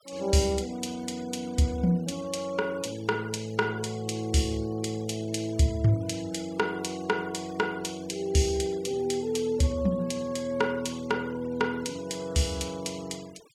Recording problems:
noise reduction artefacts; signal-to-artefact ratio 21 dB

